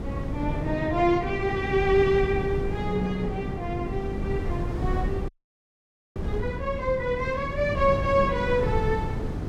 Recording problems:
electrical hum; 50 Hz, harmonics up to 500 Hz, SNR 12 dB
wind on the microphone; below 180 Hz, SNR 6 dB
audio freezing; at 5.5 s for 1 s

